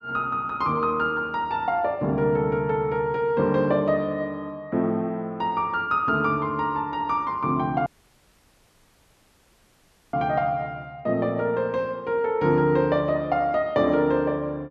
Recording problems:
dropout; at 8 s for 2.5 s

